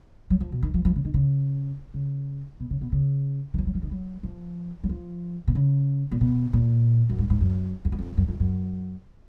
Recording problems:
wind noise; below 120 Hz, SNR 24 dB

